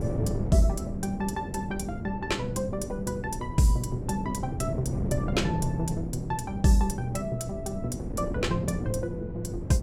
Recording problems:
wind on the microphone; below 270 Hz, SNR 5 dB

